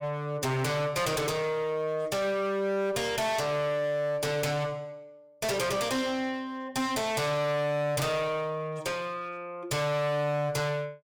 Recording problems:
distorted audio; hard clipping, uneven, signal-to-distortion ratio 6 dB

